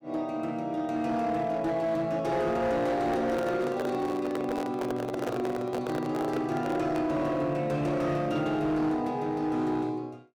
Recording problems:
distortion; hard clipping, signal-to-distortion ratio 12 dB
microphone handling noise; from 3 to 7 s; peak 0 dB vs average level

